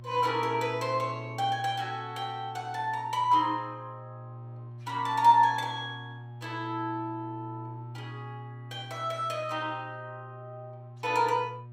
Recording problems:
hum; 60 Hz, harmonics up to 600 Hz, SNR 15 dB

